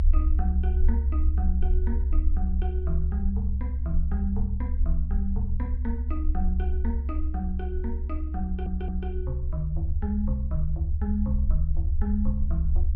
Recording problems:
low-pass filter; nothing above 5.4 kHz
rumble; below 68 Hz, SNR -6 dB
audio stuttering; at 8.5 s

